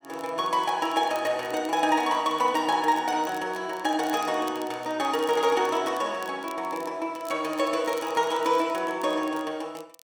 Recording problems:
crackling; vinyl, SNR 23 dB

